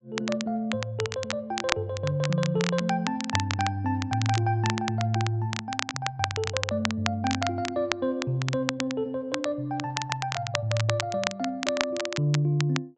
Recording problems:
treble cut off; nothing above 8 kHz
crackling; vinyl, SNR 5 dB

